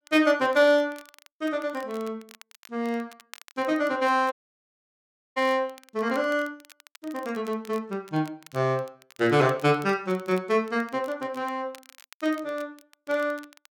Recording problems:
crackle; vinyl, SNR 25 dB
audio cutting out; at 4.5 s for 1 s

